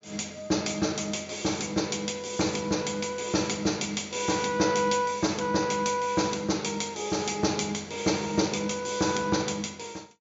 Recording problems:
treble cut off; nothing above 7.3 kHz

